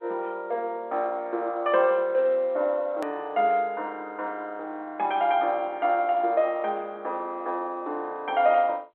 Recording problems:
phone line; 370 Hz to 3.6 kHz, G.711
edit click; at 3 s

